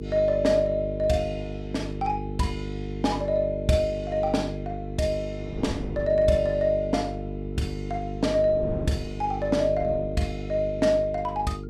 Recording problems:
hum; 50 Hz, harmonics up to 450 Hz, SNR 8 dB
wind noise; below 320 Hz, SNR 16 dB

